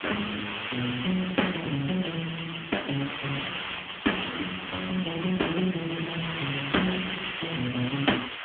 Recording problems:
phone line; 220 Hz to 3.3 kHz, AMR-NB
hiss; SNR 4 dB

